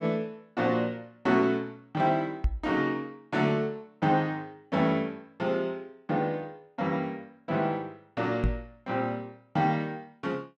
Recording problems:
knock on the microphone; at 2.5 s and at 8.5 s; peak +6 dB vs average level

